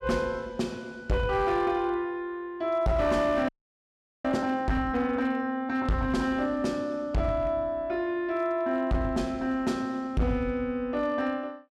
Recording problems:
distorted audio; hard clipping, uneven, signal-to-distortion ratio 11 dB
audio freezing; at 3.5 s for 1 s

